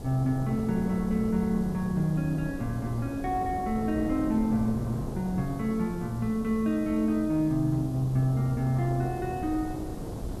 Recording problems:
hum; 60 Hz, harmonics up to 480 Hz, SNR 21 dB
background hiss; slope +6 dB per octave, SNR 26 dB
wind noise; below 370 Hz, SNR 10 dB

